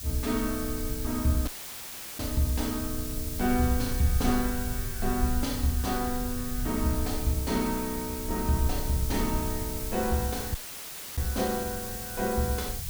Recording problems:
background hiss; slope +4 dB per octave, SNR 6 dB
low-frequency rumble; below 88 Hz, SNR 7 dB
dropout; at 1.5 s for 0.5 s and at 11 s for 0.5 s

